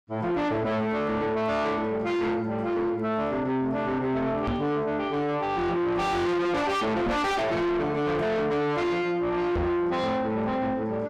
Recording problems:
distorted audio; soft clipping, signal-to-distortion ratio 6 dB
microphone thump; at 4.5 s, at 7 s and at 9.5 s; peak +4 dB vs average level

